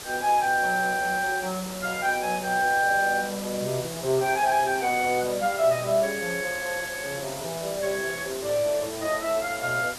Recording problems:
hiss; slope -2 dB per octave, SNR 10 dB

